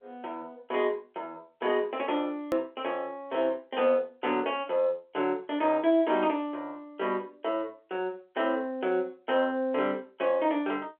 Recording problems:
phone line; 300 Hz to 3.5 kHz, G.711
hard cut with a click; at 2.5 s

